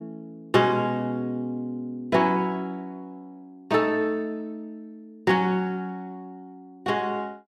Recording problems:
none

